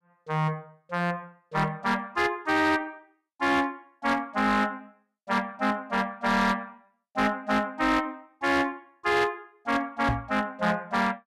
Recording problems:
distorted audio; hard clipping, uneven, signal-to-distortion ratio 11 dB
knock on the microphone; at 10 s; peak +2 dB vs average level

